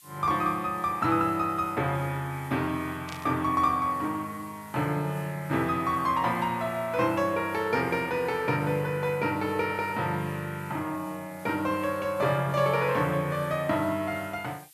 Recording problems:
hiss; slope +5 dB per octave, SNR 24 dB
static burst; at 3 s; peak -8 dB vs average level

